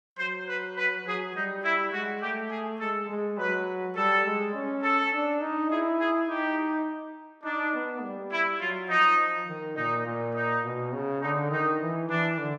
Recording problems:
none

